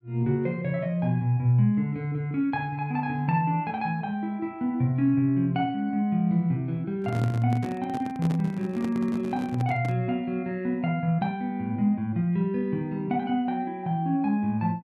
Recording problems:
microphone handling noise; from 7 to 10 s; peak -3 dB vs average level

